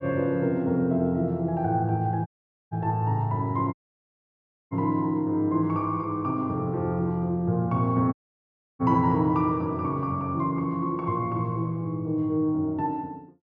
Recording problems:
audio cutting out; at 2.5 s, at 3.5 s for 1 s and at 8 s for 0.5 s

